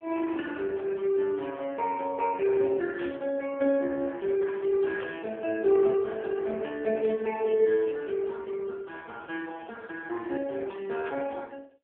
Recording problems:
telephone audio; 260 Hz to 3.5 kHz, AMR-NB
static burst; 4 times, first at 3 s; peak -11 dB vs average level

